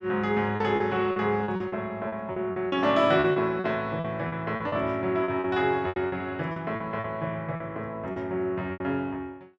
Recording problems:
lost packets; 12% of the sound replaced, filled with repeated pitch periods

